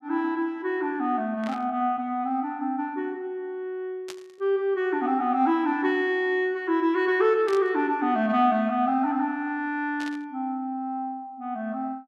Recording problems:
static burst; 4 times, first at 1.5 s; peak -9 dB vs average level

